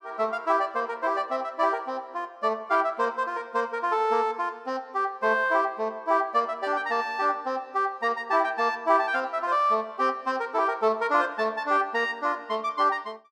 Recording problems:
none

